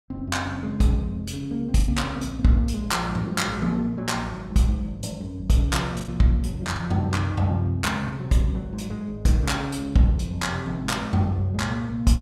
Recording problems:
lost packets; 2% of the sound replaced, filled with the last packet

